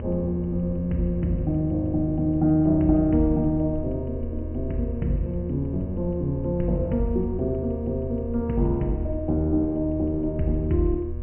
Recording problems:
low-pass filter; nothing above 3.1 kHz
electrical hum; 60 Hz, harmonics up to 1.2 kHz, SNR 15 dB
low-frequency rumble; below 80 Hz, strongest tone 80 Hz, SNR 9 dB

